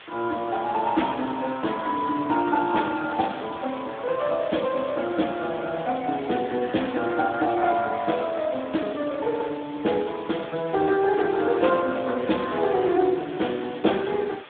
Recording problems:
telephone audio; 170 Hz to 3.6 kHz, Speex
hiss; SNR 18 dB

